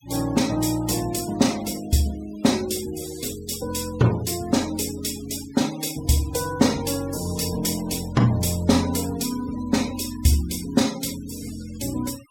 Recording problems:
noise reduction artefacts; signal-to-artefact ratio 16 dB

